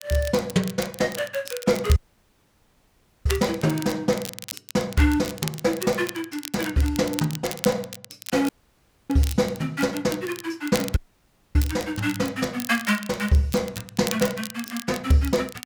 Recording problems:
crackling; vinyl, SNR 12 dB
audio cutting out; at 2 s for 1.5 s, at 8.5 s for 0.5 s and at 11 s for 0.5 s

